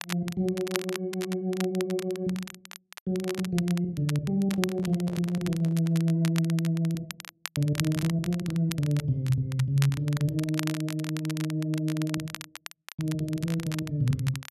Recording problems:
crackle; vinyl, SNR 12 dB
microphone handling noise; from 4.5 to 6 s; peak -11 dB vs average level

